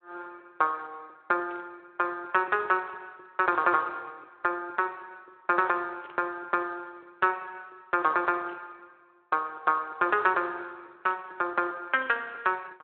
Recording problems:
telephone audio; 300 Hz to 3.6 kHz, Speex
burst of static; 5 times, first at 1.5 s; peak -17 dB vs average level

